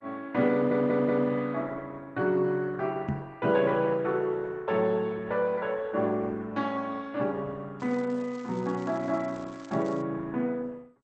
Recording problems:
codec artefacts; MP2, then Opus, log-spectral distance 3 dB
stutter; at 0.5 s
knock on the microphone; at 3 s; peak +3 dB vs average level
crackling; from 8 to 10 s; loose cable, SNR 27 dB

